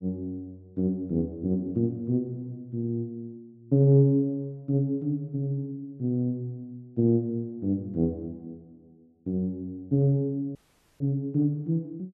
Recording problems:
audio cutting out; at 11 s

